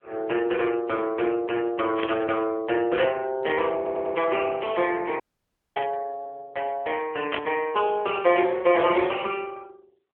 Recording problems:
phone line; 320 Hz to 3.3 kHz, AMR-NB
static burst; at 2 s, at 6 s and at 7.5 s; peak +3 dB vs average level
stutter; at 4 s
audio cutting out; at 5 s for 0.5 s

